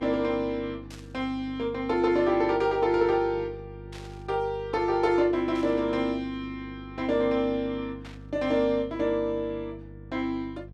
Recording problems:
electrical hum; 50 Hz, harmonics up to 500 Hz, SNR 18 dB
static burst; 4 times, first at 1 s; peak -14 dB vs average level

